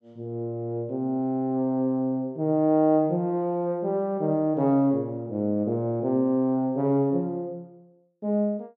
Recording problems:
none

